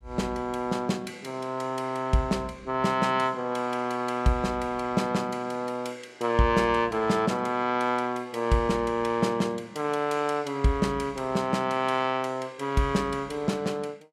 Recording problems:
none

